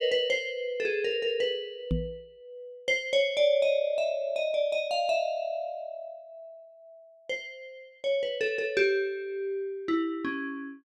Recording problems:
microphone bump; at 2 s; peak +4 dB vs average level

